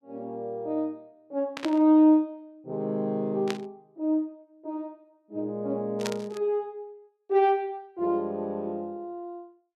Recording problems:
burst of static; at 1.5 s, at 3.5 s and at 6 s; peak -1 dB vs average level

